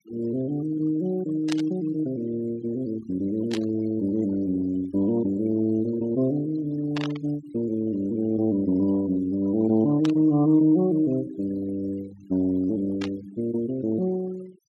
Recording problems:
denoising artefacts; signal-to-artefact ratio 20 dB
static burst; 5 times, first at 1.5 s; peak -3 dB vs average level

